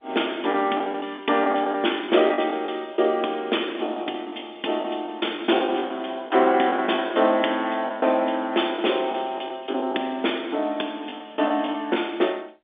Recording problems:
phone line; 240 Hz to 3.6 kHz, G.711
packet loss; 9% of the sound replaced, filled with the last packet

